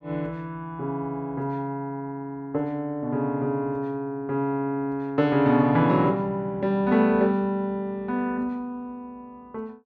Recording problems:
none

